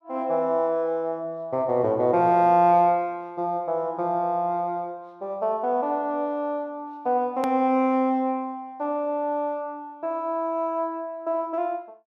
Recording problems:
click at an edit; at 7.5 s

